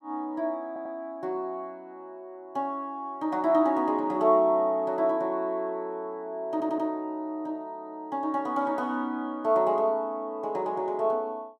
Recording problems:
stutter; at 0.5 s and at 6.5 s

